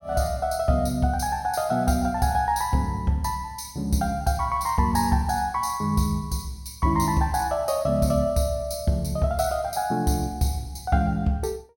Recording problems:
none

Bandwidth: 17 kHz